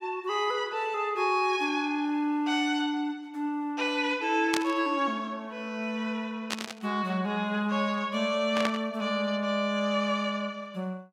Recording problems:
static burst; at 4.5 s, at 6.5 s and at 8.5 s; peak +3 dB vs average level

